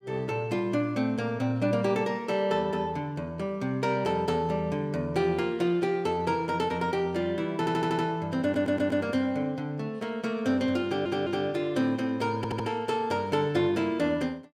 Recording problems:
audio stuttering; 4 times, first at 7.5 s

